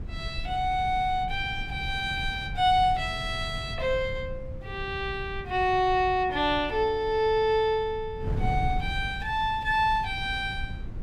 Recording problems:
wind noise; below 130 Hz, SNR 11 dB

